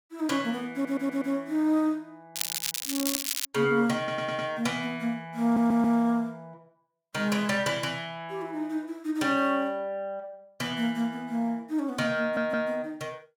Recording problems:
audio stuttering; 4 times, first at 0.5 s
crackle; from 2.5 to 3.5 s; loose cable, SNR 1 dB

